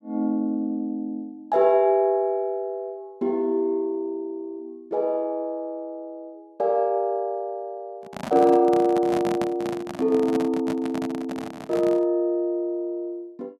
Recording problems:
microphone handling noise; from 8 to 12 s; peak -2 dB vs average level

